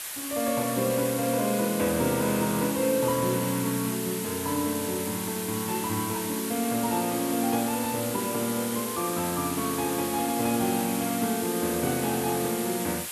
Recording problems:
hiss; SNR 5 dB

